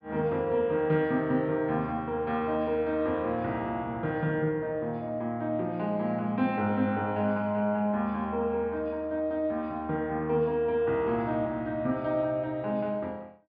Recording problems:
low-pass filter; nothing above 5 kHz

